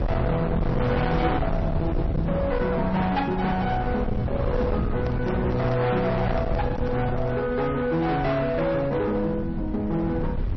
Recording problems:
codec artefacts; AAC, then MP3, log-spectral distance 2 dB, nothing above 5.7 kHz
distorted audio; hard clipping, uneven, signal-to-distortion ratio 7 dB
low-frequency rumble; below 240 Hz, SNR 5 dB
microphone handling noise; from 5 to 7.5 s; peak -7 dB vs average level

